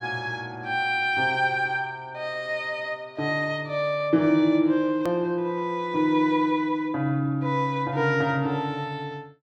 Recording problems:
edit click; at 5 s

